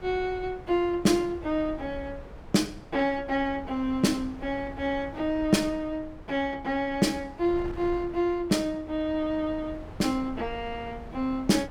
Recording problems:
wind noise; below 350 Hz, SNR 16 dB

